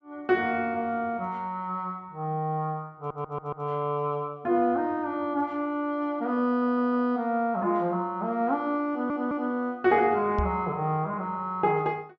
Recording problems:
low-pass filter; nothing above 7.4 kHz
audio stuttering; at 3 s, at 6.5 s and at 9 s
knock on the microphone; at 10 s; peak +2 dB vs average level

